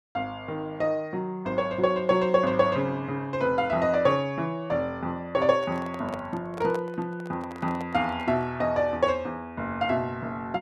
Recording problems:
microphone handling noise; from 5.5 to 8.5 s; peak -7 dB vs average level

